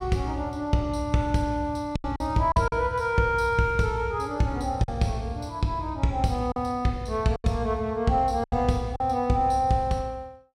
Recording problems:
packet loss; 5% of the sound replaced, filled with silence

